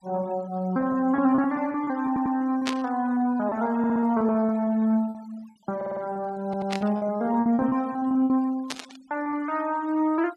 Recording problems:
denoising artefacts; signal-to-artefact ratio 24 dB
packet loss; 12% of the sound replaced, filled with repeated pitch periods
stutter; 4 times, first at 2 s
static burst; at 2.5 s, at 6.5 s and at 8.5 s; peak +1 dB vs average level

